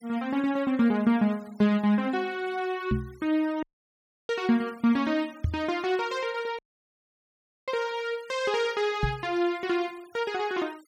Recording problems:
noise reduction artefacts; signal-to-artefact ratio 25 dB
knock on the microphone; at 3 s, at 5.5 s and at 9 s; peak +4 dB vs average level
audio cutting out; at 3.5 s for 0.5 s and at 6.5 s for 1 s

